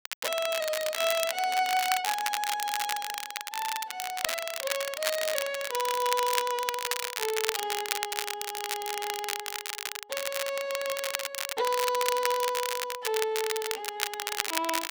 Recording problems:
crackle; vinyl, SNR 1 dB

